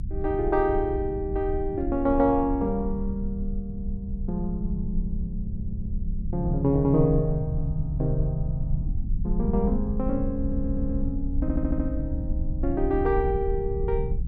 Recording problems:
rumble; below 74 Hz, SNR 4 dB
audio stuttering; at 5.5 s, at 10 s and at 11 s

